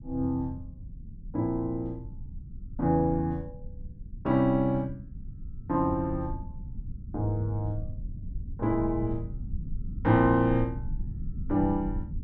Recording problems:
low-frequency rumble; below 100 Hz, SNR 12 dB

